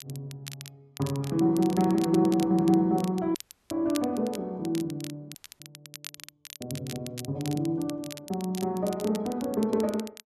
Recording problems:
crackle; vinyl, SNR 16 dB
audio cutting out; at 3.5 s and at 5.5 s

